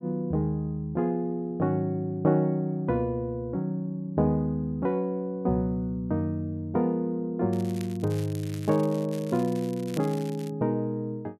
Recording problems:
crackling; from 7.5 to 11 s; loose cable, SNR 19 dB

